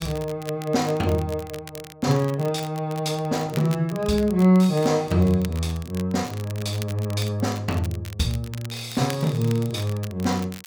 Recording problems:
crackle; vinyl, SNR 18 dB

